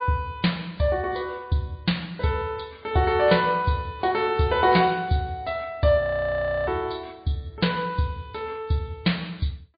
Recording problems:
low-pass filter; nothing above 4.6 kHz
lossy compression; MP3, log-spectral distance 3 dB
audio freezing; at 6 s for 0.5 s

